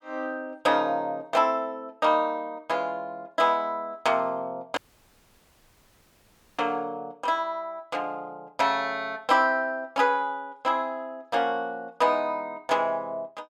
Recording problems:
audio cutting out; at 5 s for 2 s

